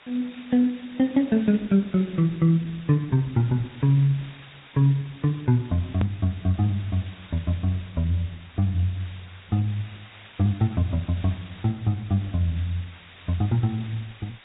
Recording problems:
treble cut off; nothing above 3.7 kHz
lossy compression; Opus, then Vorbis, log-spectral distance 12 dB
background hiss; SNR 23 dB
hard cut with a click; at 6 s

